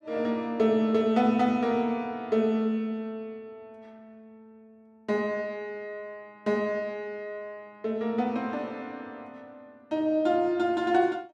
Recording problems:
none

